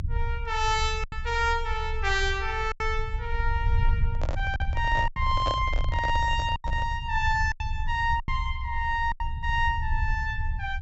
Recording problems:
treble missing; nothing above 8 kHz
low-frequency rumble; below 76 Hz, strongest tone 24 Hz, SNR 4 dB
lost packets; 6% of the sound replaced, filled with silence
handling noise; from 4 to 7 s; peak 0 dB vs average level

